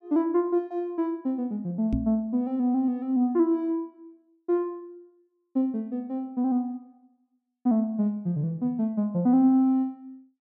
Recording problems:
knock on the microphone; at 2 s; peak +2 dB vs average level

